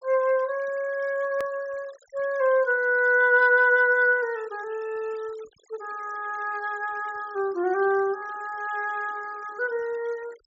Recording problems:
treble missing; nothing above 7.6 kHz
noise reduction artefacts; signal-to-artefact ratio 25 dB
click at an edit; at 1.5 s

